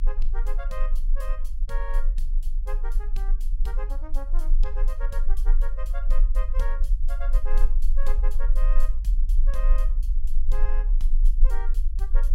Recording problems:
low-frequency rumble; below 32 Hz, strongest tone 18 Hz, SNR -15 dB

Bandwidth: 17.5 kHz